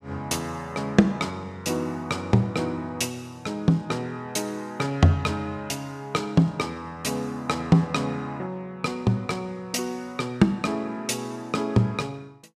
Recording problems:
none

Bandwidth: 15 kHz